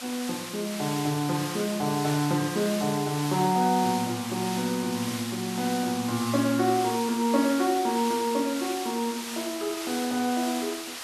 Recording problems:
hiss; SNR 8 dB

